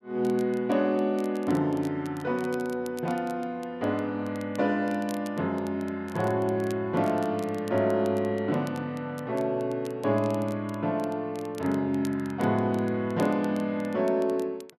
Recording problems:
crackle; vinyl, SNR 24 dB

